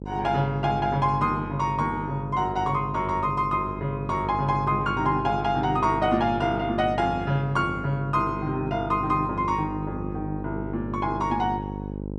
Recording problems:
hum; 50 Hz, harmonics up to 950 Hz, SNR 8 dB

